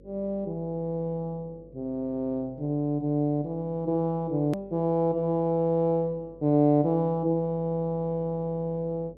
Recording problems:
hum; 50 Hz, harmonics up to 550 Hz, SNR 25 dB
edit click; at 4.5 s

